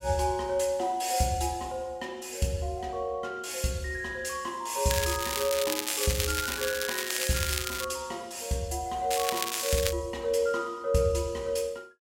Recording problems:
crackle; from 5 to 8 s and at 9 s; loose cable, SNR 2 dB

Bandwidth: 16 kHz